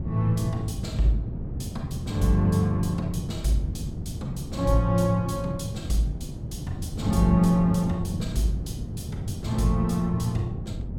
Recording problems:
wind on the microphone; below 190 Hz, SNR 7 dB

